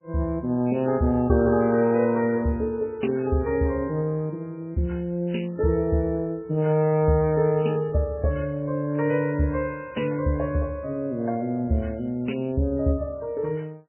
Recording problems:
codec artefacts; MP3, log-spectral distance 2 dB, nothing above 2.9 kHz

